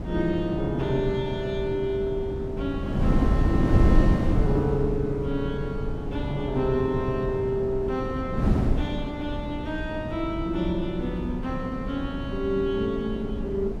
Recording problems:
wind on the microphone; below 220 Hz, SNR 1 dB

